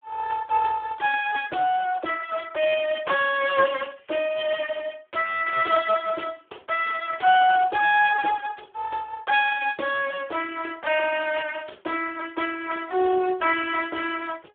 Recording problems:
telephone audio; 300 Hz to 3.2 kHz, Speex

